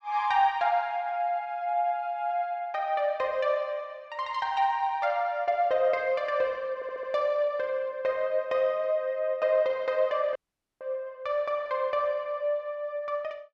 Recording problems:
stutter; at 7 s
audio cutting out; at 10 s

